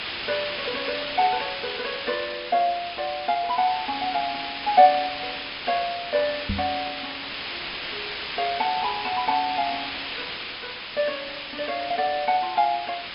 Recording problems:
treble cut off; nothing above 5.5 kHz
background hiss; SNR 6 dB
knock on the microphone; at 6.5 s; peak 0 dB vs average level

